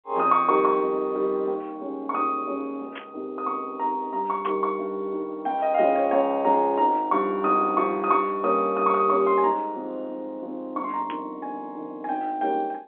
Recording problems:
telephone audio; 240 Hz to 3.4 kHz, G.711
static burst; at 3 s, at 4.5 s and at 11 s; peak -9 dB vs average level

